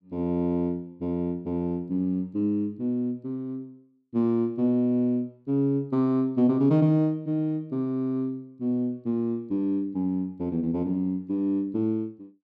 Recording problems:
none

